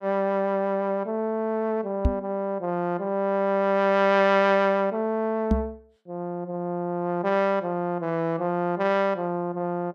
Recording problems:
knock on the microphone; at 2 s and at 5.5 s; peak +6 dB vs average level

